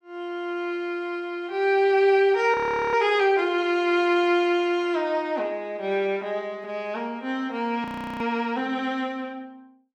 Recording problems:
frozen audio; at 2.5 s and at 8 s

